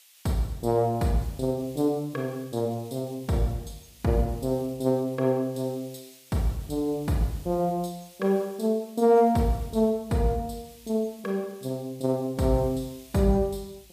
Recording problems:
hiss; SNR 24 dB

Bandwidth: 15 kHz